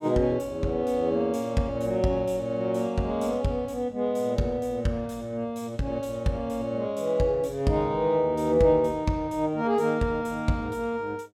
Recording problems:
none

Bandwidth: 16.5 kHz